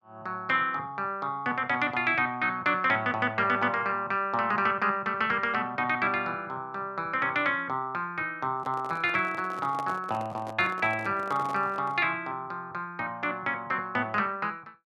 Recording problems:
microphone handling noise; from 8.5 to 12 s; peak -6 dB vs average level

